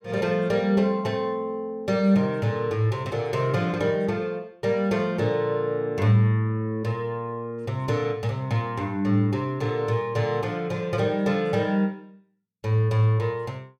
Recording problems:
none

